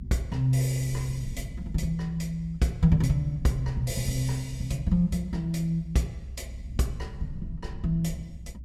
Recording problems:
low-frequency rumble; below 94 Hz, SNR 12 dB

